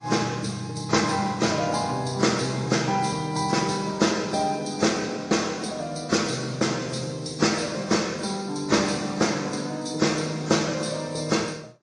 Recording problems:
lossy compression; MP3, then AAC, log-spectral distance 4 dB, nothing above 8.7 kHz

